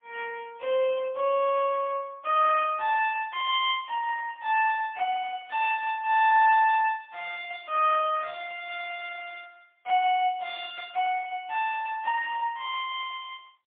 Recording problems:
phone line; 320 Hz to 3.5 kHz, AMR-NB, then MP3

